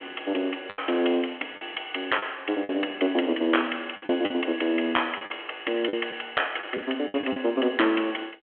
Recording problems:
phone line; 240 Hz to 3.4 kHz, G.726
packet loss; 7% of the sound replaced, filled with the last packet

